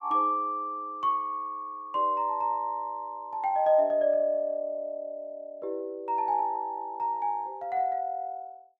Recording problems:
none

